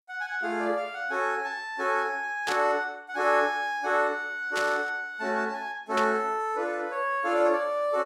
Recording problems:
static burst; at 2.5 s, at 4.5 s and at 6 s; peak -1 dB vs average level

